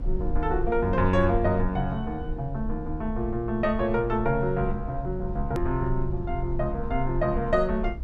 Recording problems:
mains hum; 50 Hz, harmonics up to 350 Hz, SNR 22 dB
rumble; below 54 Hz, SNR 8 dB
edit click; at 5.5 s

